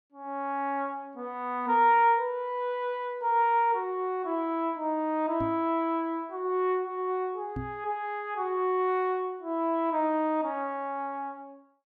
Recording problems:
knock on the microphone; at 5.5 s and at 7.5 s; peak -4 dB vs average level

